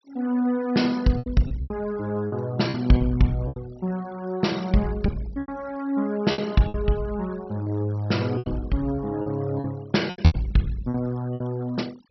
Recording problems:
treble missing; nothing above 5.8 kHz
noise reduction artefacts; signal-to-artefact ratio 22 dB
lost packets; 9% of the sound replaced, filled with repeated pitch periods

